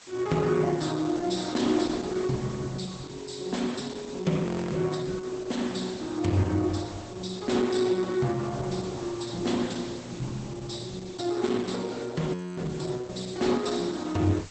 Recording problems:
codec artefacts; Opus, log-spectral distance 9 dB, nothing above 8.2 kHz
background hiss; slope 0 dB per octave, SNR 19 dB
frozen audio; at 4.5 s and at 12 s

